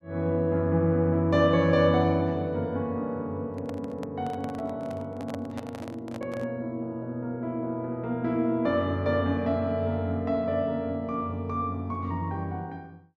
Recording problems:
handling noise; from 3.5 to 6.5 s; peak -6 dB vs average level

